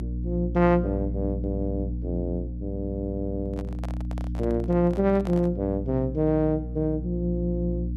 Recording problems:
electrical hum; 60 Hz, harmonics up to 300 Hz, SNR 6 dB
handling noise; from 3.5 to 5.5 s; peak -7 dB vs average level

